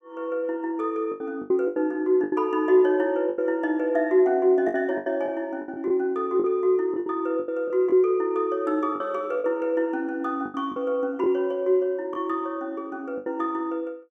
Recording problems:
packet loss; 9% of the sound replaced, filled with the last packet

